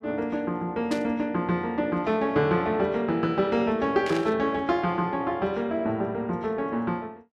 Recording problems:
burst of static; at 1 s and at 4 s; peak -6 dB vs average level

